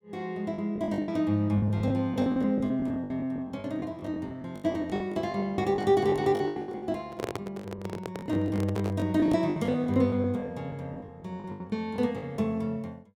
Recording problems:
lost packets; 18% of the sound replaced, filled with the last packet
microphone handling noise; from 7 to 9 s; peak +1 dB vs average level

